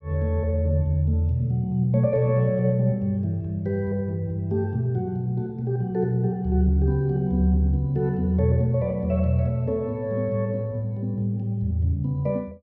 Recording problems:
none

